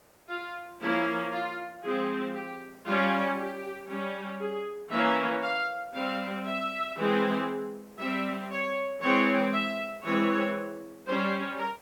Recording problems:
background hiss; SNR 26 dB

